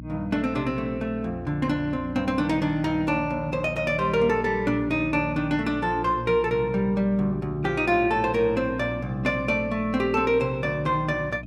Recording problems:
electrical hum; 60 Hz, harmonics up to 300 Hz, SNR 13 dB

